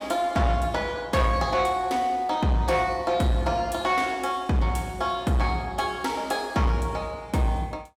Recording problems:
distortion; soft clipping, signal-to-distortion ratio 11 dB

